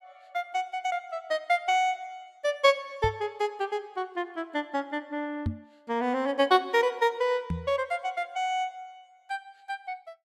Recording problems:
microphone thump; at 3 s, at 5.5 s and at 7.5 s; peak +3 dB vs average level

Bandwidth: 15 kHz